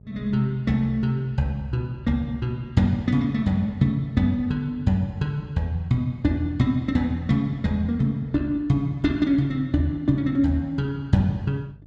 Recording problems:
electrical hum; 50 Hz, harmonics up to 600 Hz, SNR 24 dB

